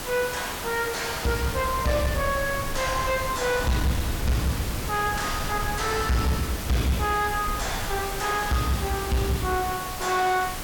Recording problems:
distorted audio; soft clipping, signal-to-distortion ratio 6 dB
hiss; SNR 6 dB
rumble; below 170 Hz, SNR 9 dB
wind on the microphone; below 300 Hz, SNR 13 dB

